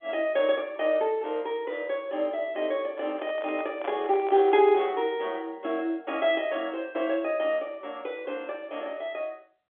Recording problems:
telephone audio; 280 Hz to 3.5 kHz, G.711
handling noise; from 3 to 5 s; peak -5 dB vs average level

